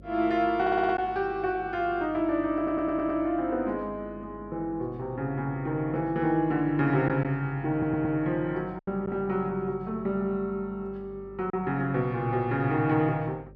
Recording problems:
hum; 50 Hz, harmonics up to 600 Hz, SNR 21 dB
lost packets; 1.2% of the sound replaced, filled with silence
audio stuttering; at 0.5 s, at 2.5 s and at 7.5 s

